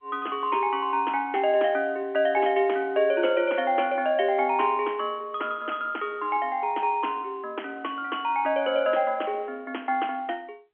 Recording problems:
phone line; 300 Hz to 3.3 kHz, G.711

